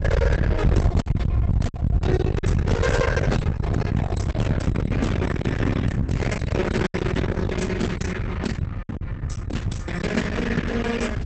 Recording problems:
lossy codec; Opus, log-spectral distance 2 dB, nothing above 8.2 kHz
distortion; hard clipping, signal-to-distortion ratio 6 dB
rumble; below 210 Hz, SNR -1 dB
lost packets; 3% of the sound replaced, filled with silence

